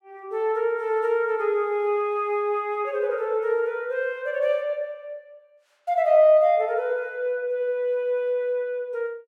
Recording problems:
none

